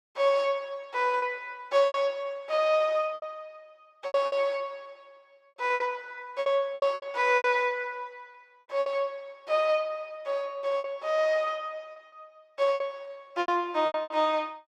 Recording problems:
lost packets; 10% of the sound replaced, filled with repeated pitch periods

